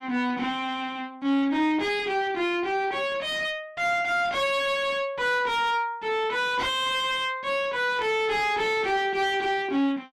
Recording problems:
distortion; soft clipping, signal-to-distortion ratio 7 dB
static burst; at 8 s; peak -15 dB vs average level

